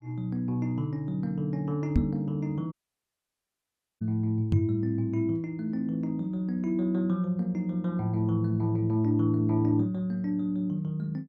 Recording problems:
knock on the microphone; at 2 s and at 4.5 s; peak +8 dB vs average level
dropout; at 2.5 s for 1.5 s

